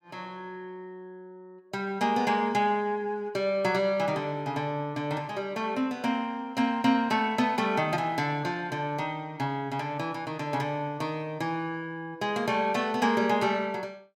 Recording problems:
none

